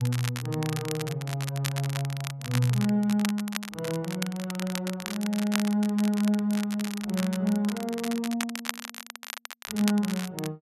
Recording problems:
crackle; vinyl, SNR 9 dB

